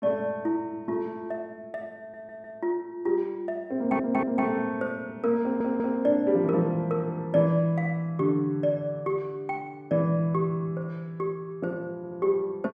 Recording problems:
stutter; 4 times, first at 2 s

